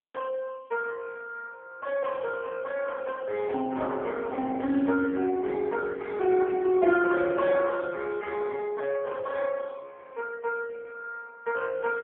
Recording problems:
phone line; 220 Hz to 2.8 kHz, AMR-NB

